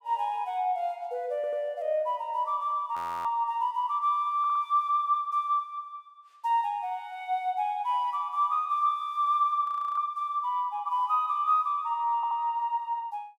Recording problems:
stutter; at 1.5 s, at 4.5 s and at 12 s
frozen audio; at 3 s and at 9.5 s

